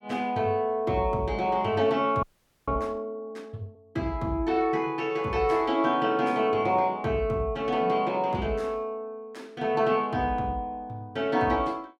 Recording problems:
audio freezing; at 2 s

